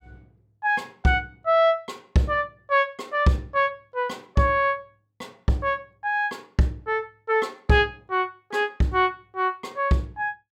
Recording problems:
none

